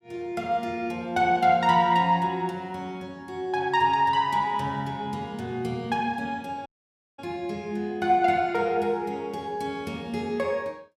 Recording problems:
dropout; at 6.5 s for 0.5 s

